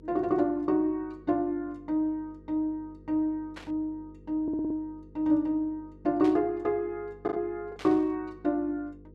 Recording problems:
hum; 50 Hz, harmonics up to 500 Hz, SNR 23 dB
packet loss; 1.5% of the sound replaced, filled with the last packet
burst of static; at 3.5 s, at 6 s and at 8 s; peak -10 dB vs average level
stutter; at 4.5 s

